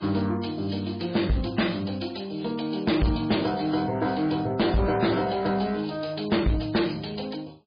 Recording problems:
codec artefacts; MP3, log-spectral distance 6 dB, nothing above 4.2 kHz
distorted audio; soft clipping, signal-to-distortion ratio 7 dB

